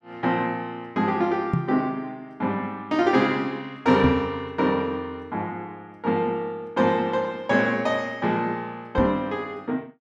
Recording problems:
microphone bump; at 1.5 s, at 4 s and at 9 s; peak +5 dB vs average level

